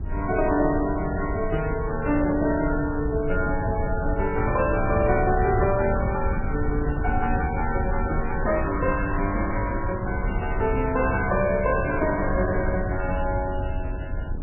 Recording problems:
codec artefacts; MP3, log-spectral distance 3 dB, nothing above 2.4 kHz
wind on the microphone; below 94 Hz, SNR 5 dB

